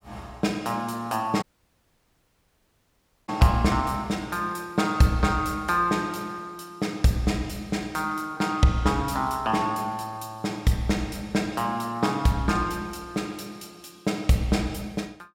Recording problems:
audio cutting out; at 1.5 s for 2 s

